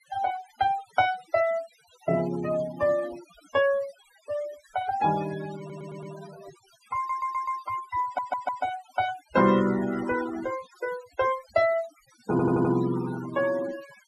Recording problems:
denoising artefacts; signal-to-artefact ratio 15 dB
audio stuttering; 4 times, first at 5.5 s

